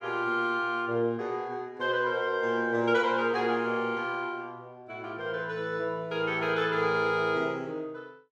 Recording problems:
none

